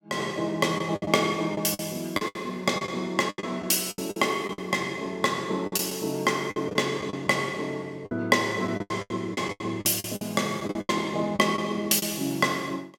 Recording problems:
packet loss; 12% of the sound replaced, filled with the last packet

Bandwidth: 17 kHz